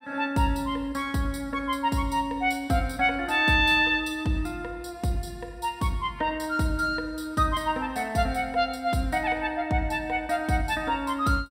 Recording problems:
none

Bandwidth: 16 kHz